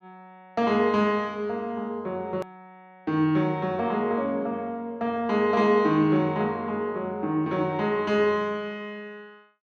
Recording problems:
click at an edit; at 2.5 s

